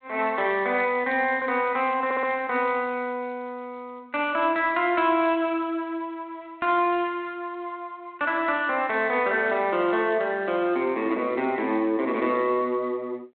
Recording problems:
phone line; 240 Hz to 4 kHz, G.726
audio stuttering; at 2 s

